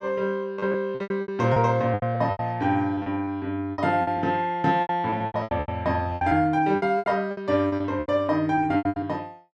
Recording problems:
lost packets; 19% of the sound replaced, filled with repeated pitch periods

